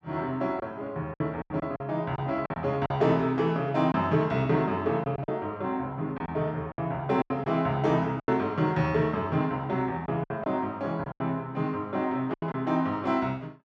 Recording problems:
lost packets; 8% of the sound replaced, filled with silence

